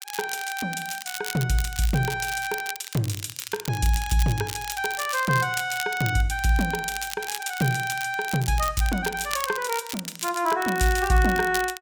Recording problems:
crackling; vinyl, SNR 10 dB

